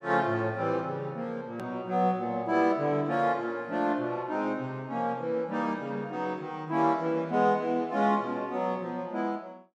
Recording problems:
edit click; at 1.5 s

